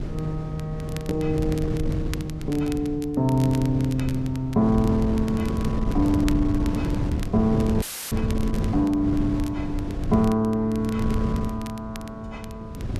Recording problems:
wind on the microphone; below 200 Hz, SNR 4 dB
crackle; vinyl, SNR 20 dB
audio cutting out; at 8 s; filled with static

